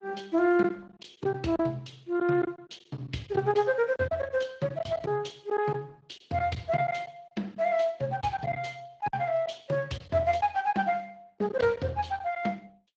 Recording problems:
codec artefacts; Speex, then Opus, log-spectral distance 4 dB
packet loss; 6% of the sound replaced, filled with silence

